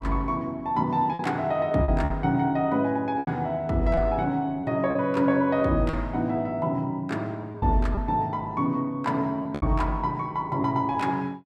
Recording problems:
lost packets; 5% of the sound replaced, filled with repeated pitch periods

